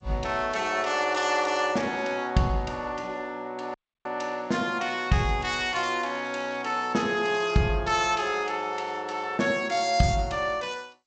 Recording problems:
codec artefacts; G.722, log-spectral distance 3 dB, nothing above 7.6 kHz
dropout; at 3.5 s

